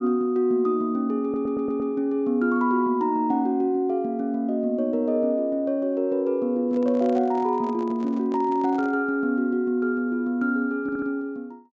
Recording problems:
treble cut off; nothing above 8 kHz
stutter; at 1 s and at 11 s
microphone handling noise; from 6.5 to 9 s; peak -12 dB vs average level

